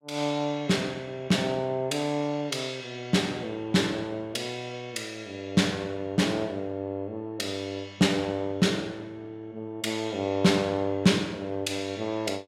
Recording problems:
none

